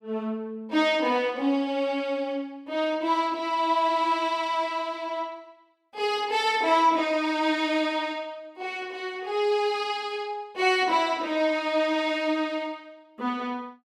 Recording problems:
none

